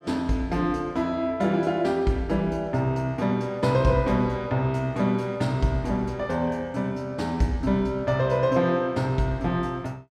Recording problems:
none

